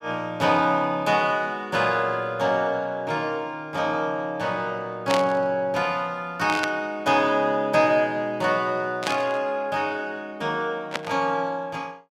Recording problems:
burst of static; 4 times, first at 5 s; peak +1 dB vs average level

